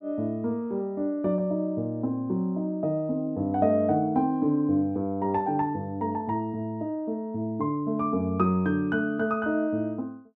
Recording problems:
none

